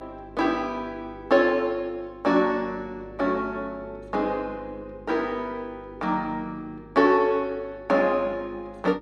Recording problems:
hum; 50 Hz, harmonics up to 400 Hz, SNR 22 dB

